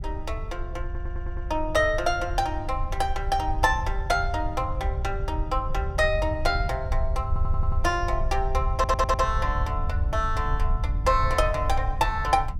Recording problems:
rumble; below 76 Hz, SNR 4 dB
stutter; at 1 s, at 7.5 s and at 8.5 s

